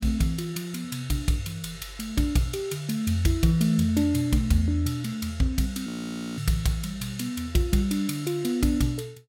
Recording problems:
frozen audio; at 6 s for 0.5 s

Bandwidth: 16.5 kHz